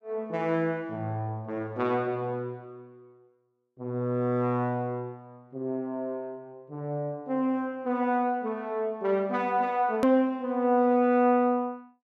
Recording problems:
hard cut with a click; at 10 s

